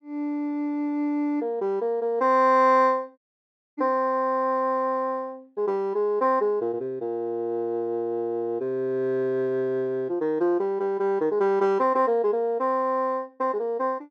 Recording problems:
audio cutting out; at 3 s for 0.5 s

